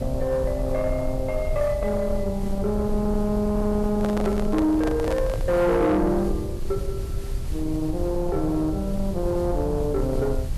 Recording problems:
distorted audio; soft clipping, signal-to-distortion ratio 11 dB
hiss; slope -4 dB per octave, SNR 21 dB
rumble; below 90 Hz, SNR 7 dB
microphone handling noise; from 4 to 5.5 s; peak -1 dB vs average level

